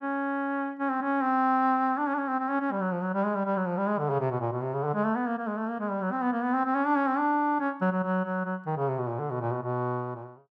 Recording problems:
none

